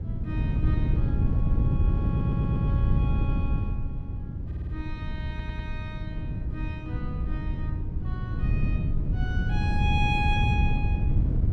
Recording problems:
wind on the microphone; below 140 Hz, SNR -9 dB
stutter; at 2 s, at 4.5 s and at 5.5 s

